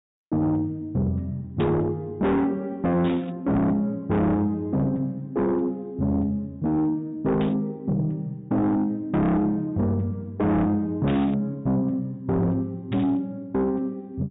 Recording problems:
low-pass filter; nothing above 4 kHz
distortion; soft clipping, signal-to-distortion ratio 7 dB
static burst; 5 times, first at 1.5 s; peak -8 dB vs average level

